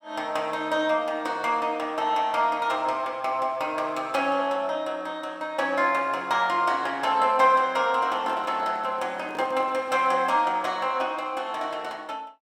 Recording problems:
handling noise; from 8 to 10 s; peak -9 dB vs average level

